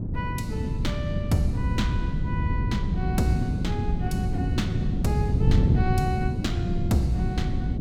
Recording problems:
wind on the microphone; below 170 Hz, SNR -5 dB

